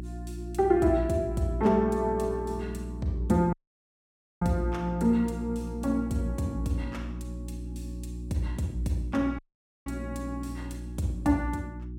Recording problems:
hum; 60 Hz, harmonics up to 360 Hz, SNR 9 dB
dropout; at 3.5 s for 1 s and at 9.5 s

